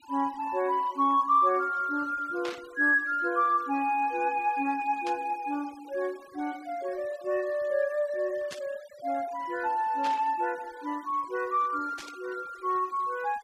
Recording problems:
denoising artefacts; signal-to-artefact ratio 23 dB
static burst; 5 times, first at 2.5 s; peak -7 dB vs average level

